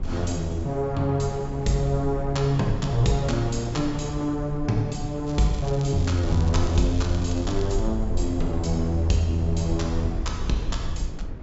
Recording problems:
treble missing; nothing above 8 kHz
low-frequency rumble; below 60 Hz, SNR 9 dB
wind noise; below 310 Hz, SNR 12 dB
crackle; from 5.5 to 8 s; loose cable, SNR 19 dB

